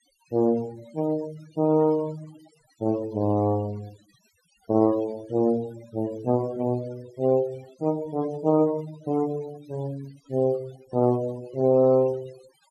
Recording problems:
noise reduction artefacts; signal-to-artefact ratio 22 dB

